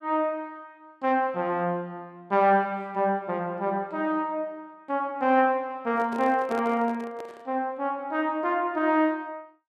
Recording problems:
handling noise; from 6 to 7.5 s; peak -6 dB vs average level

